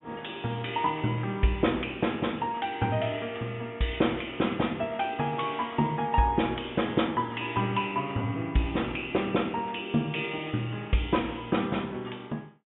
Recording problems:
low-pass filter; nothing above 3.6 kHz

